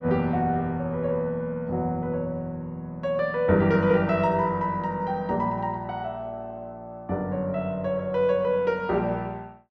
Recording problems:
none

